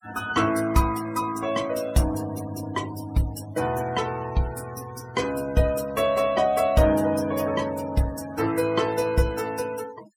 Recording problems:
noise reduction artefacts; signal-to-artefact ratio 17 dB

